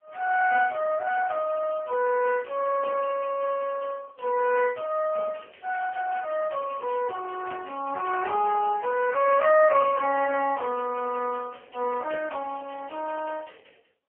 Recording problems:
phone line; 320 Hz to 2.5 kHz, AMR-NB, then MP3

